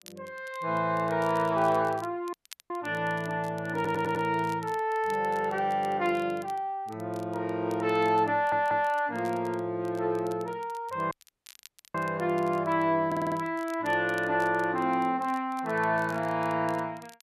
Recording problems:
crackle; vinyl, SNR 25 dB
dropout; at 2.5 s and at 11 s for 1 s
audio stuttering; at 4 s, at 8.5 s and at 13 s

